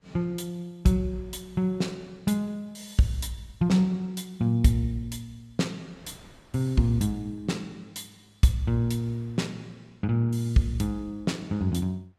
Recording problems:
wind on the microphone; below 1.2 kHz, SNR 30 dB

